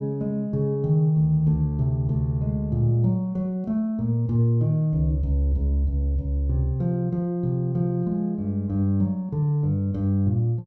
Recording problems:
none

